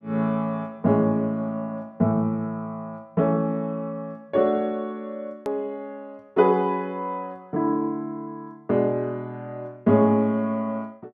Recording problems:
edit click; at 5.5 s

